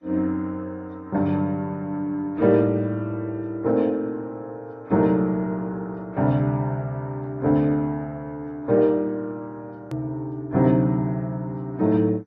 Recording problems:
lossy compression; AAC, then MP2, log-spectral distance 2 dB, nothing above 13.1 kHz
edit click; at 10 s

